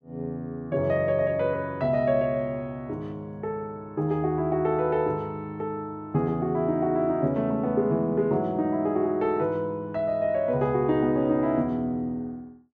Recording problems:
none

